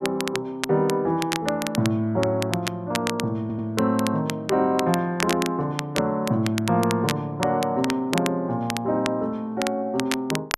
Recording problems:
crackle; vinyl, SNR 8 dB
stutter; at 3.5 s

